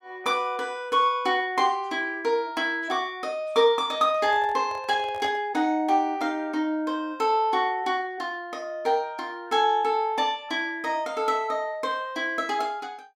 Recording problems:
microphone handling noise; from 4 to 5.5 s; peak -9 dB vs average level

